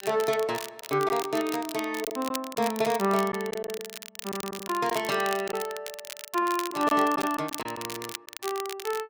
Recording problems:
crackle; vinyl, SNR 10 dB
lost packets; 4% of the sound replaced, filled with silence

